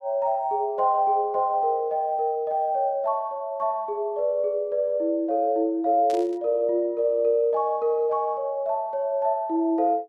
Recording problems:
burst of static; at 6 s; peak -13 dB vs average level

